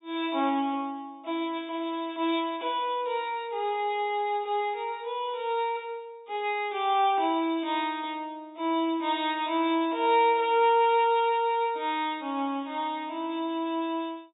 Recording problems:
treble missing; nothing above 4 kHz

